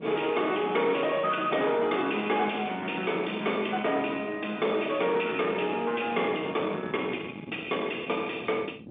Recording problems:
phone line; 170 Hz to 3.6 kHz, G.711
distorted audio; soft clipping, signal-to-distortion ratio 12 dB
wind on the microphone; below 1.3 kHz, SNR 15 dB

